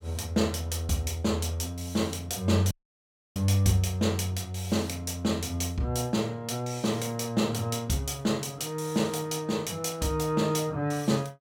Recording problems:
audio cutting out; at 2.5 s for 0.5 s

